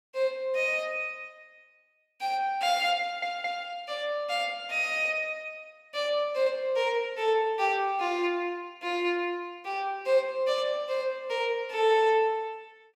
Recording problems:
audio stuttering; at 3 s

